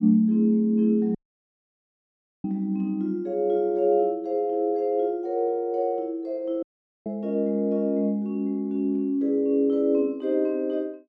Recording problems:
dropout; at 1 s for 1.5 s and at 6.5 s

